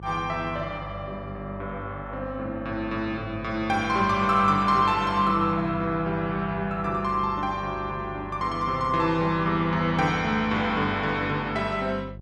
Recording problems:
hum; 50 Hz, harmonics up to 600 Hz, SNR 15 dB

